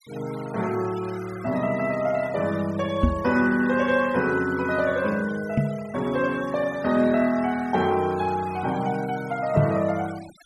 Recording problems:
noise reduction artefacts; signal-to-artefact ratio 19 dB
knock on the microphone; at 3 s, at 5.5 s and at 9.5 s; peak +7 dB vs average level

